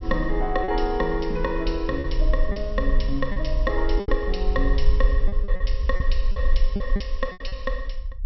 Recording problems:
treble cut off; nothing above 5.6 kHz
rumble; below 46 Hz, SNR -1 dB
packet loss; 8% of the sound replaced, filled with repeated pitch periods

